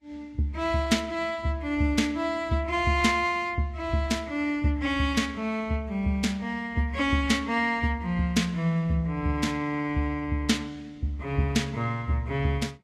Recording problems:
lossy codec; Vorbis, log-spectral distance 2 dB, nothing above 13.8 kHz

